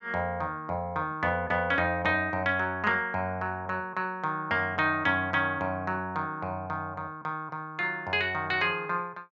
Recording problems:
none

